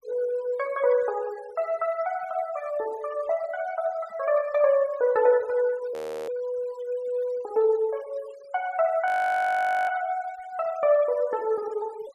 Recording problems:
denoising artefacts; signal-to-artefact ratio 23 dB
frozen audio; at 6 s and at 9 s for 1 s

